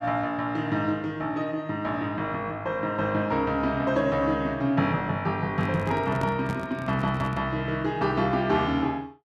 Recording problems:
handling noise; from 5.5 to 7.5 s; peak -1 dB vs average level

